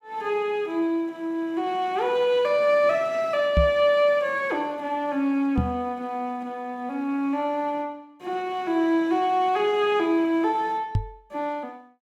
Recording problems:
knock on the microphone; at 3.5 s, at 5.5 s and at 11 s; peak +5 dB vs average level

